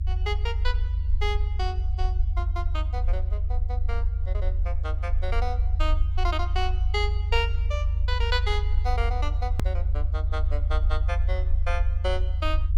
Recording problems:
rumble; below 78 Hz, SNR -6 dB
edit click; at 9.5 s

